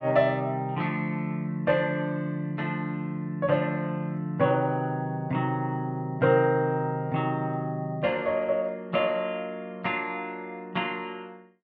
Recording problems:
treble missing; nothing above 8 kHz

